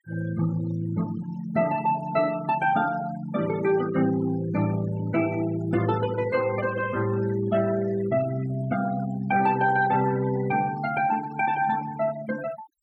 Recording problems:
denoising artefacts; signal-to-artefact ratio 16 dB

